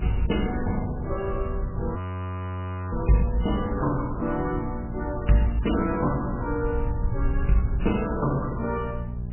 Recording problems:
codec artefacts; MP3, log-spectral distance 3 dB, nothing above 3 kHz
mains hum; 60 Hz, harmonics up to 600 Hz, SNR 9 dB
rumble; below 90 Hz, SNR 7 dB
wind on the microphone; below 180 Hz, SNR 14 dB
frozen audio; at 2 s for 1 s

